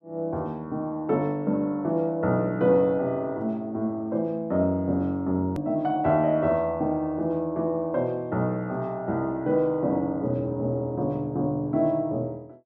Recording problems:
click at an edit; at 5.5 s

